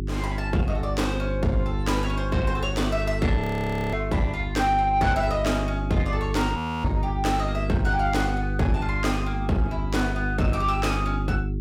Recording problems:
distortion; soft clipping, signal-to-distortion ratio 12 dB
hum; 50 Hz, harmonics up to 400 Hz, SNR 3 dB
frozen audio; at 3.5 s for 0.5 s and at 6.5 s

